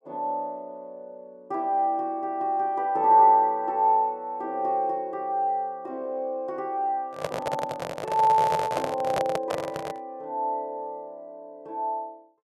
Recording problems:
microphone handling noise; from 7 to 10 s; peak +3 dB vs average level

